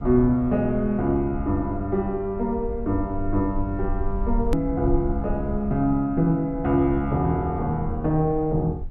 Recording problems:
low-frequency rumble; below 56 Hz, SNR 11 dB
edit click; at 4.5 s

